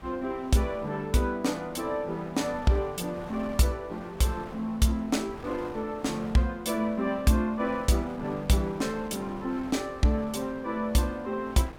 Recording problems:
wind on the microphone; below 1.1 kHz, SNR 17 dB

